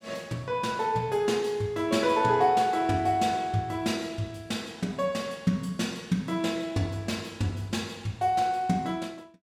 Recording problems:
none

